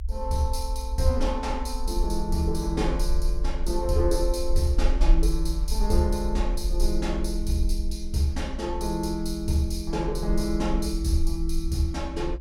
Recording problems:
rumble; below 50 Hz, SNR 2 dB

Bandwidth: 16.5 kHz